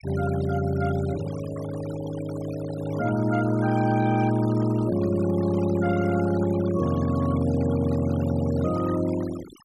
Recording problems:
noise reduction artefacts; signal-to-artefact ratio 16 dB

